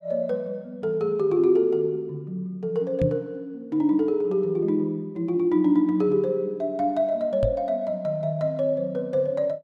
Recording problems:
knock on the microphone; at 3 s and at 7.5 s; peak +2 dB vs average level

